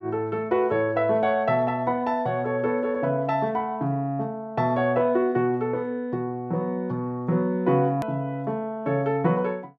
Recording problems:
click at an edit; at 8 s

